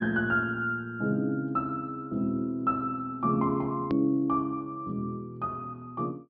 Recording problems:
treble missing; nothing above 5.5 kHz
click at an edit; at 4 s

